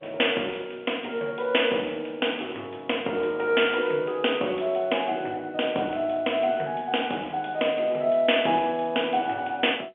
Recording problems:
telephone audio; 300 Hz to 3.5 kHz, G.711

